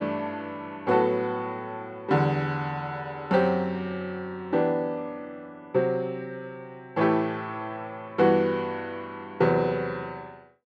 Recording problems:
none

